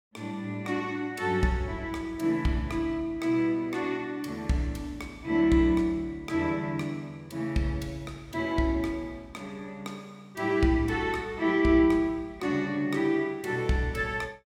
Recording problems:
none

